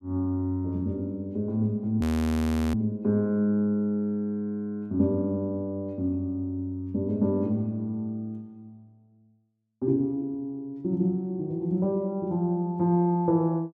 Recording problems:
frozen audio; at 2 s for 0.5 s

